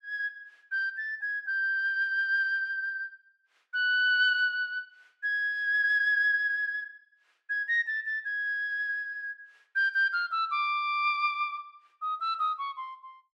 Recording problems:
none

